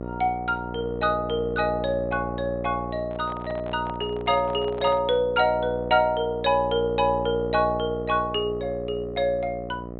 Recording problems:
treble cut off; nothing above 4 kHz
electrical hum; 60 Hz, harmonics up to 1.2 kHz, SNR 9 dB
microphone handling noise; from 3 to 5 s; peak -6 dB vs average level

